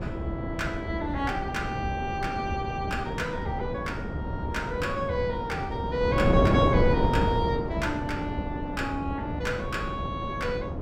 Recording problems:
wind noise; below 400 Hz, SNR 1 dB

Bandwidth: 16 kHz